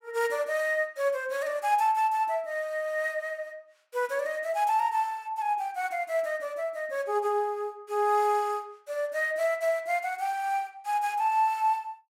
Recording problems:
none

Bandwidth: 16 kHz